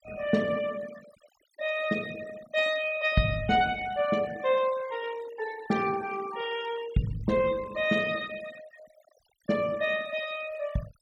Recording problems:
noise reduction artefacts; signal-to-artefact ratio 17 dB

